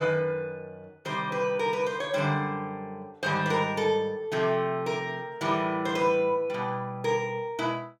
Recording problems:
none

